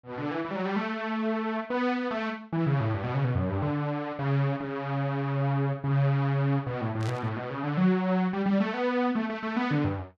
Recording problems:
burst of static; at 7 s; peak -10 dB vs average level

